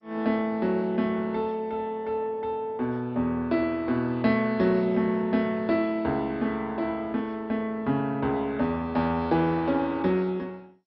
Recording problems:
lossy codec; MP2, log-spectral distance 2 dB, nothing above 4.6 kHz

